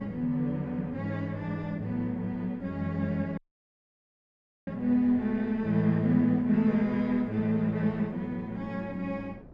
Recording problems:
wind noise; below 380 Hz, SNR 23 dB
dropout; at 3.5 s for 1.5 s

